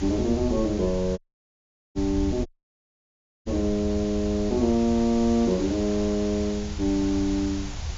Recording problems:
treble missing; nothing above 7.2 kHz
hiss; SNR 15 dB
rumble; below 82 Hz, SNR 10 dB
dropout; at 1 s for 1 s and at 2.5 s for 1 s

